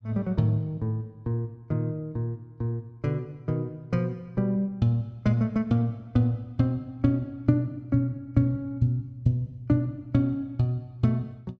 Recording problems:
none

